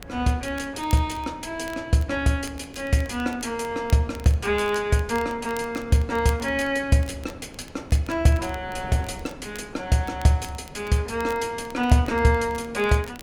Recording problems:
wind noise; below 480 Hz, SNR 20 dB
crackle; vinyl, SNR 23 dB

